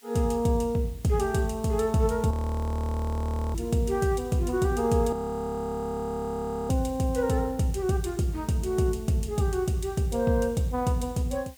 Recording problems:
background hiss; slope +2 dB per octave, SNR 26 dB
audio freezing; at 2.5 s for 1 s and at 5 s for 1.5 s

